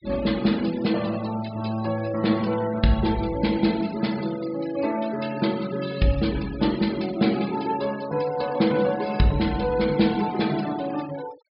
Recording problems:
treble cut off; nothing above 5.5 kHz
noise reduction artefacts; signal-to-artefact ratio 17 dB

